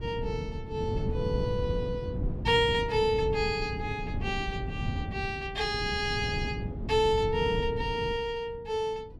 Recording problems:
wind noise; below 190 Hz, SNR 5 dB

